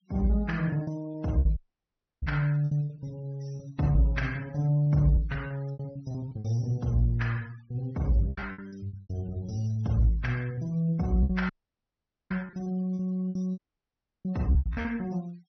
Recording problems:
treble missing; nothing above 6 kHz
denoising artefacts; signal-to-artefact ratio 25 dB
lost packets; 10% of the sound replaced, filled with repeated pitch periods
dropout; at 1.5 s for 0.5 s, at 12 s for 1 s and at 14 s for 0.5 s

